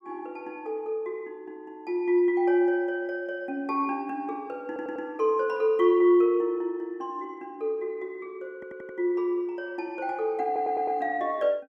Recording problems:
stutter; at 4.5 s, at 8.5 s and at 10 s

